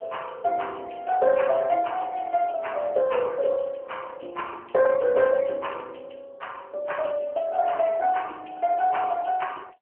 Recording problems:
telephone audio; 300 Hz to 3.2 kHz, AMR-NB

